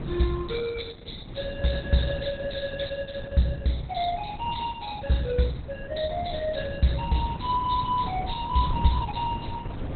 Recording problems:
lossy codec; Opus, log-spectral distance 8 dB, nothing above 4.1 kHz
wind on the microphone; below 240 Hz, SNR 10 dB

